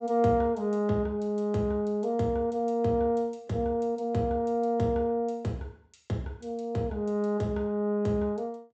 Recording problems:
low-pass filter; nothing above 8 kHz

